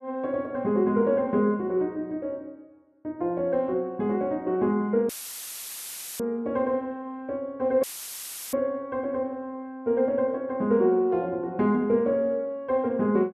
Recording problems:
audio cutting out; at 5 s for 1 s and at 8 s for 0.5 s; filled with static

